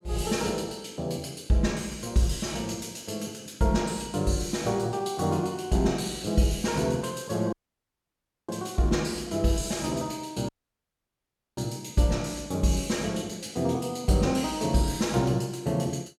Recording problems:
dropout; at 7.5 s for 1 s and at 10 s for 1 s

